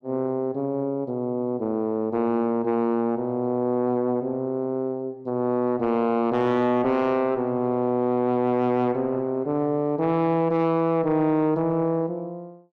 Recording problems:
distortion; soft clipping, signal-to-distortion ratio 11 dB

